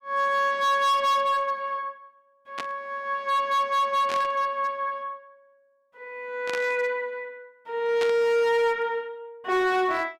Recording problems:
distortion; hard clipping, signal-to-distortion ratio 10 dB
burst of static; 4 times, first at 2.5 s; peak -4 dB vs average level

